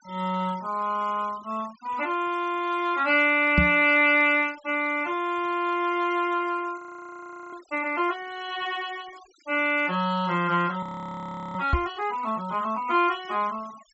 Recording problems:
treble cut off; nothing above 7.8 kHz
noise reduction artefacts; signal-to-artefact ratio 24 dB
microphone thump; at 3.5 s and at 12 s; peak +6 dB vs average level
audio freezing; at 7 s for 0.5 s and at 11 s for 0.5 s

